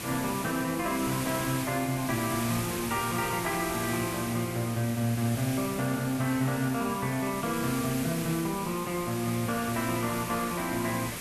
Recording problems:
background hiss; slope -2 dB per octave, SNR 6 dB

